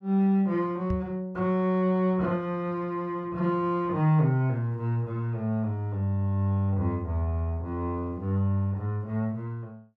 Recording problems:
microphone thump; at 1 s; peak 0 dB vs average level

